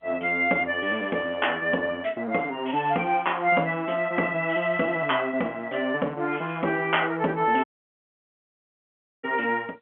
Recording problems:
telephone audio; 190 Hz to 3.3 kHz, G.711
dropout; at 7.5 s for 1.5 s

